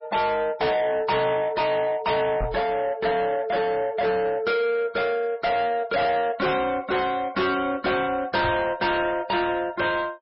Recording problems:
lossy codec; MP3, log-spectral distance 3 dB, nothing above 5.3 kHz
distortion; soft clipping, signal-to-distortion ratio 7 dB
knock on the microphone; at 2.5 s and at 8.5 s; peak 0 dB vs average level

